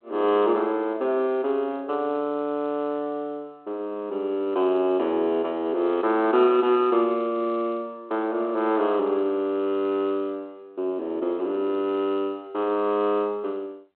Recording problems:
telephone audio; 280 Hz to 3.4 kHz, G.726

